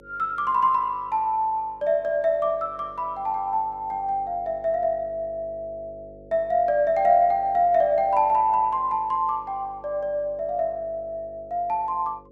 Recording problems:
electrical hum; 50 Hz, harmonics up to 550 Hz, SNR 24 dB

